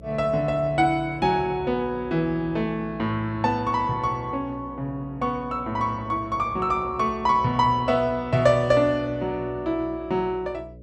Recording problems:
electrical hum; 60 Hz, harmonics up to 600 Hz, SNR 20 dB

